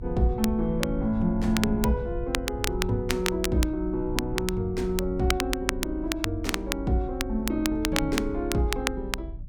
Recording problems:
low-frequency rumble; below 70 Hz, SNR 9 dB
crackling; vinyl, SNR 5 dB

